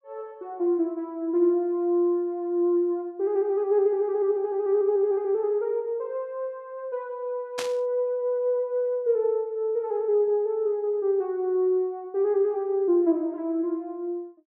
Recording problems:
burst of static; at 7.5 s; peak -3 dB vs average level

